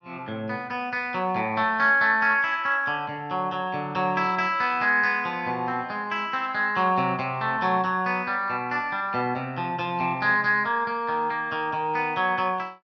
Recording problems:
low-pass filter; nothing above 7 kHz

